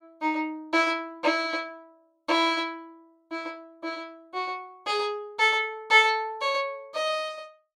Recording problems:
none

